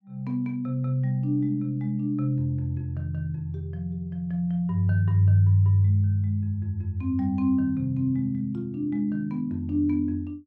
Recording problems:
none

